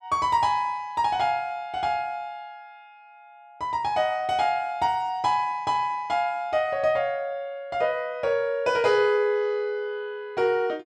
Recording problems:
none

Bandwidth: 12 kHz